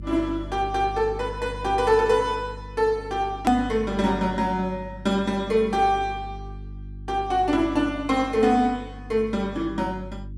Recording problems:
mains hum; 50 Hz, harmonics up to 350 Hz, SNR 15 dB
edit click; at 3.5 s

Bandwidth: 12.5 kHz